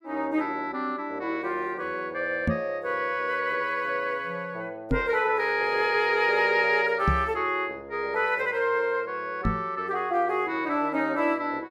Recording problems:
knock on the microphone; 4 times, first at 2.5 s; peak +4 dB vs average level

